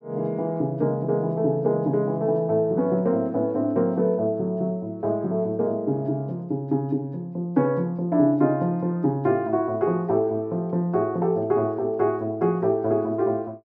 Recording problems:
none

